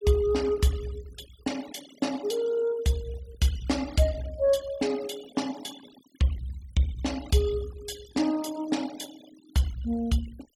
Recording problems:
noise reduction artefacts; signal-to-artefact ratio 17 dB

